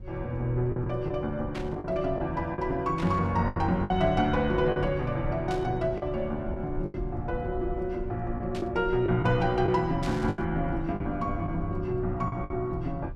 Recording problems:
low-frequency rumble; below 88 Hz, SNR 11 dB
lost packets; 7% of the sound replaced, filled with the last packet
static burst; 5 times, first at 1.5 s; peak -7 dB vs average level

